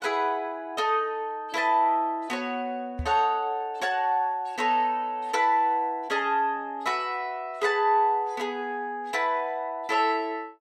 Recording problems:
microphone bump; at 3 s; peak -3 dB vs average level

